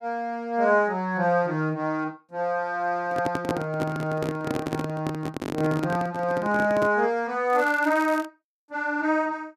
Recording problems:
handling noise; from 3 to 7 s; peak +2 dB vs average level
crackle; at 7.5 s; loose cable, SNR 20 dB

